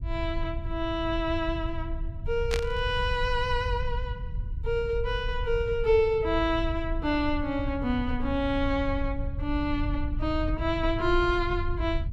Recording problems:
rumble; below 78 Hz, SNR 6 dB
static burst; at 2.5 s; peak +2 dB vs average level

